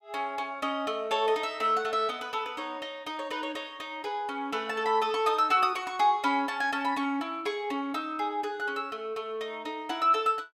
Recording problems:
none

